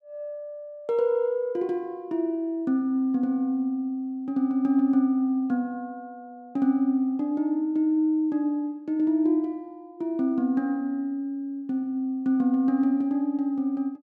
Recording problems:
none

